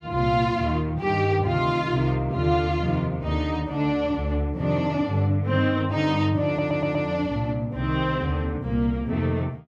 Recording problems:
audio stuttering; at 6.5 s

